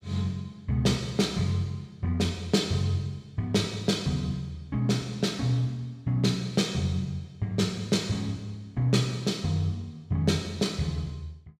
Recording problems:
none

